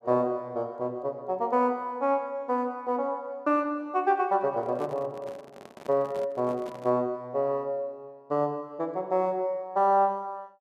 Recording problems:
handling noise; from 4.5 to 7 s; peak -11 dB vs average level

